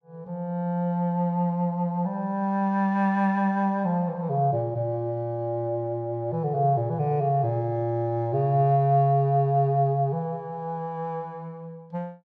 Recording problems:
none

